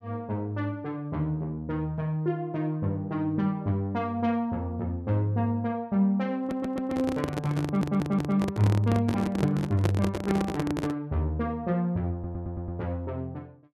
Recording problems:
stutter; at 6.5 s, at 7.5 s and at 12 s
handling noise; from 6.5 to 11 s; peak +4 dB vs average level

